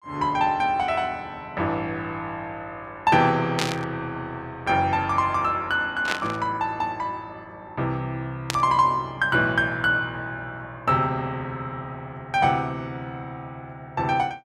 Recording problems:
burst of static; at 3.5 s, at 6 s and at 8.5 s; peak +3 dB vs average level

